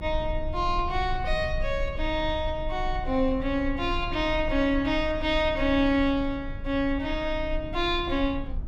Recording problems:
low-frequency rumble; below 60 Hz, strongest tone 24 Hz, SNR 9 dB

